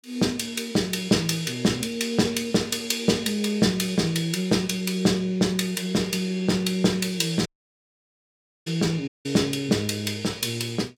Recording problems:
dropout; at 7.5 s for 1 s and at 9 s

